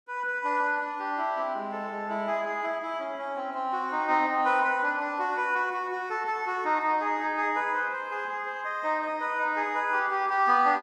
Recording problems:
none

